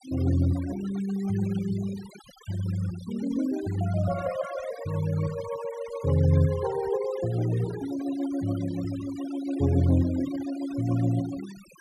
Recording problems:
denoising artefacts; signal-to-artefact ratio 17 dB

